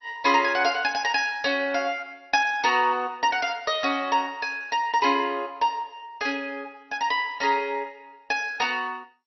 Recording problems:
codec artefacts; MP2, log-spectral distance 3 dB, nothing above 5.8 kHz

